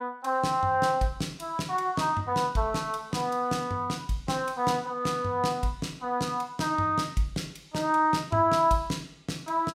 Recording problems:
none

